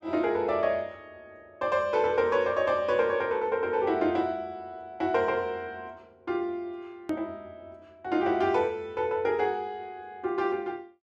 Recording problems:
edit click; at 7 s

